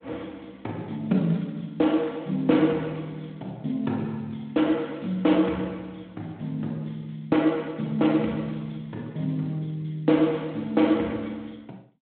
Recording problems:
phone line; 170 Hz to 3.4 kHz, Speex

